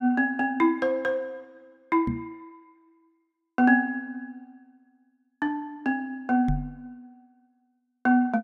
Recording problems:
microphone thump; at 2 s and at 6.5 s; peak +1 dB vs average level

